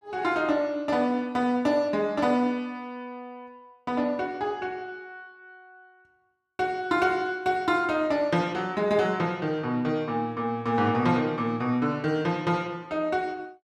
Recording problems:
none

